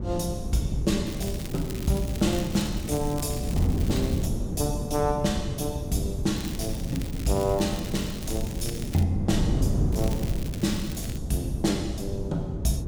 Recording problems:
wind on the microphone; below 200 Hz, SNR 2 dB
crackle; from 1 to 4.5 s, from 6.5 to 9 s and from 10 to 11 s; loose cable, SNR 13 dB

